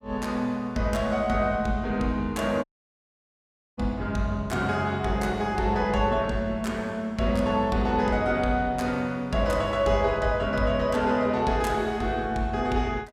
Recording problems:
dropout; at 2.5 s for 1 s

